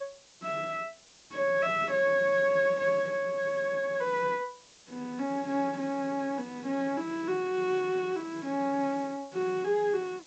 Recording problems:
low-pass filter; nothing above 8 kHz
background hiss; SNR 25 dB

